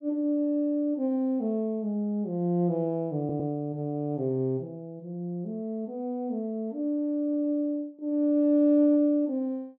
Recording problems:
audio stuttering; at 3 s

